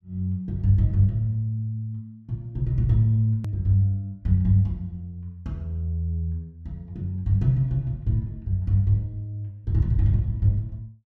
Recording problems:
click at an edit; at 3.5 s

